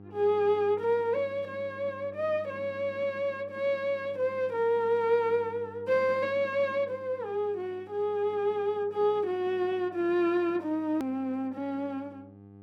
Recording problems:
mains hum; 50 Hz, harmonics up to 1.2 kHz, SNR 22 dB
click at an edit; at 11 s

